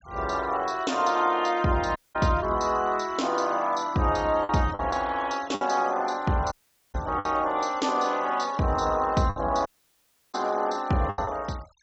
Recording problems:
treble missing; nothing above 7.5 kHz
denoising artefacts; signal-to-artefact ratio 23 dB
packet loss; 4% of the sound replaced, filled with the last packet
dropout; at 2 s, at 6.5 s and at 9.5 s for 0.5 s

